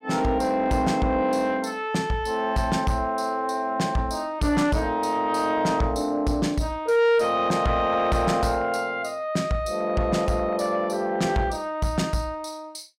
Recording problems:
distorted audio; soft clipping, signal-to-distortion ratio 11 dB

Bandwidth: 16 kHz